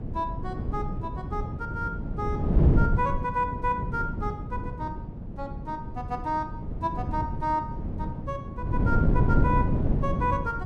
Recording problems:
wind on the microphone; below 190 Hz, SNR -2 dB

